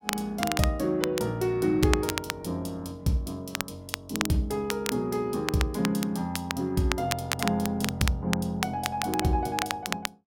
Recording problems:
crackling; vinyl, SNR 5 dB

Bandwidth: 16.5 kHz